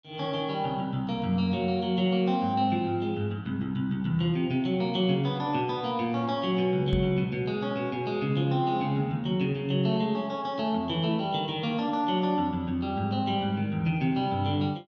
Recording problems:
microphone thump; at 7 s; peak +1 dB vs average level

